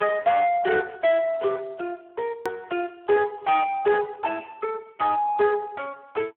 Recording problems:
phone line; 300 Hz to 3 kHz, Speex
distorted audio; soft clipping, signal-to-distortion ratio 11 dB
click at an edit; at 2.5 s

